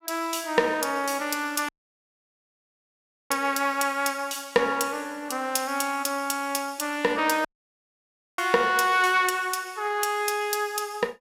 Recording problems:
dropout; at 1.5 s for 1.5 s and at 7.5 s for 1 s

